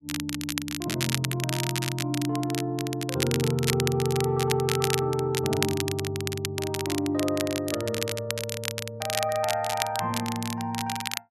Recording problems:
crackling; vinyl, SNR 4 dB

